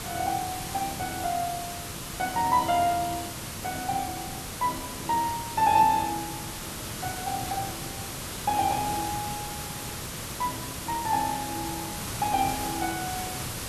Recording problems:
hiss; slope -2 dB per octave, SNR 5 dB

